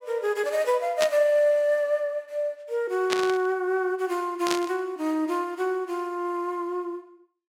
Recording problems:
burst of static; at 1 s, at 3 s and at 4.5 s; peak +3 dB vs average level

